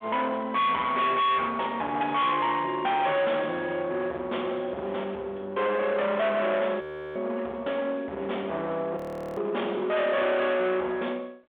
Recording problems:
phone line; 300 Hz to 3.6 kHz, G.726
distorted audio; hard clipping, signal-to-distortion ratio 7 dB
frozen audio; at 7 s and at 9 s

